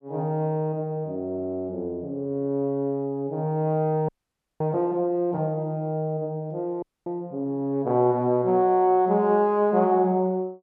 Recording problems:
frozen audio; at 4 s for 0.5 s and at 7 s

